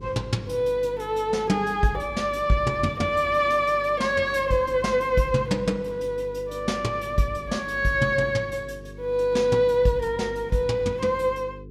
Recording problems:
mains hum; 50 Hz, harmonics up to 450 Hz, SNR 19 dB

